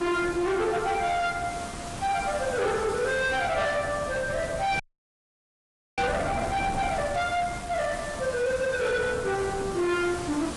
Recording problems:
lossy compression; AAC, log-spectral distance 7 dB, nothing above 11 kHz
distortion; hard clipping, uneven, signal-to-distortion ratio 10 dB
hiss; slope -3 dB per octave, SNR 12 dB
wind noise; below 740 Hz, SNR 13 dB
audio freezing; at 5 s for 1 s

